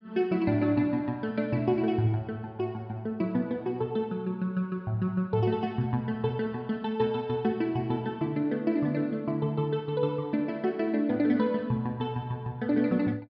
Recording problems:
treble missing; nothing above 5.5 kHz

